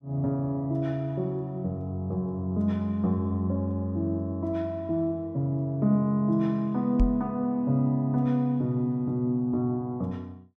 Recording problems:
microphone bump; at 7 s; peak +5 dB vs average level

